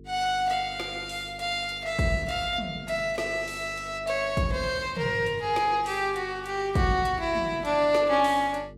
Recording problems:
electrical hum; 50 Hz, harmonics up to 450 Hz, SNR 21 dB

